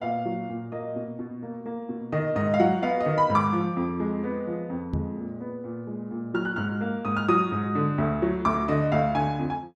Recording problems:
microphone thump; at 5 s; peak +1 dB vs average level

